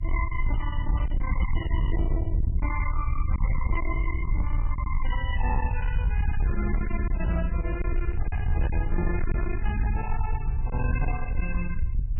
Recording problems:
lossy compression; MP3, log-spectral distance 2 dB, nothing above 2.6 kHz
distortion; soft clipping, signal-to-distortion ratio 6 dB
rumble; below 74 Hz, SNR -5 dB
lost packets; 2% of the sound replaced, filled with silence

